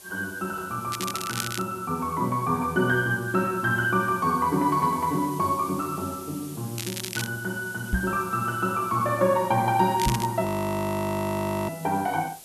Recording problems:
hiss; SNR 17 dB
crackle; at 1 s, at 7 s and at 10 s; loose cable, SNR 8 dB
knock on the microphone; at 8 s and at 10 s; peak +4 dB vs average level
frozen audio; at 10 s for 1 s

